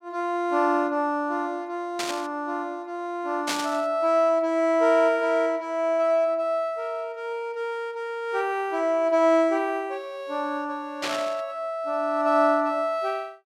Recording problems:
static burst; at 2 s, at 3.5 s and at 11 s; peak +2 dB vs average level

